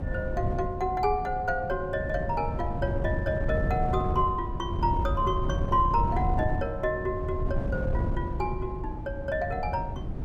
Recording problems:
wind noise; below 150 Hz, SNR 2 dB

